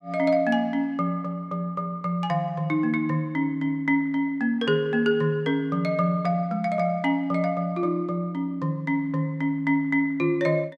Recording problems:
none

